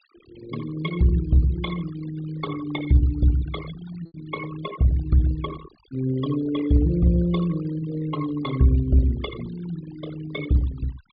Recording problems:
treble missing; nothing above 4.9 kHz
denoising artefacts; signal-to-artefact ratio 16 dB
lost packets; 0.8% of the sound replaced, filled with repeated pitch periods

